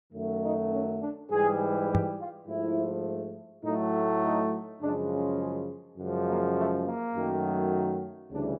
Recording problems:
microphone bump; at 2 s; peak +7 dB vs average level

